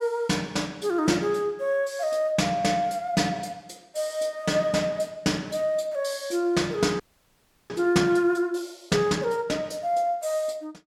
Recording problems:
frozen audio; at 7 s for 0.5 s

